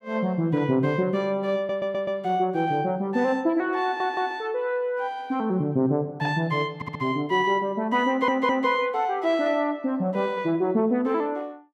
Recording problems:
stutter; 4 times, first at 1.5 s

